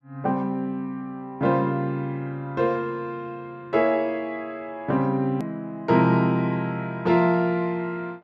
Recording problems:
click at an edit; at 5.5 s

